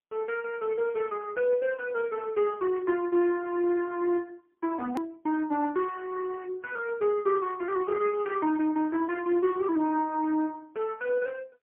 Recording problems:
phone line; 280 Hz to 2.6 kHz, AMR-NB, then MP3
click at an edit; at 5 s

